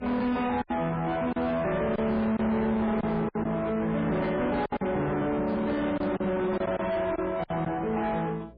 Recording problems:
lossy compression; MP3, log-spectral distance 2 dB, nothing above 4.2 kHz
distortion; soft clipping, signal-to-distortion ratio 7 dB
mains hum; 60 Hz, harmonics up to 660 Hz, SNR 23 dB
lost packets; 6% of the sound replaced, filled with silence
handling noise; from 4 to 6.5 s; peak -5 dB vs average level
crackle; from 5.5 to 7 s; loose cable, SNR 27 dB

